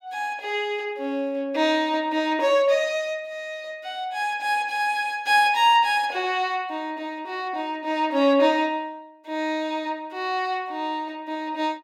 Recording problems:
none

